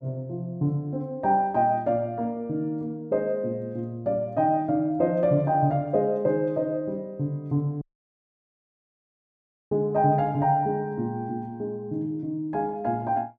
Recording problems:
dropout; at 8 s for 2 s

